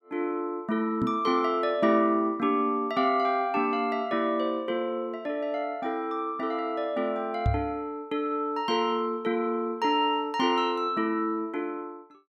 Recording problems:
knock on the microphone; at 1 s and at 7.5 s; peak +4 dB vs average level

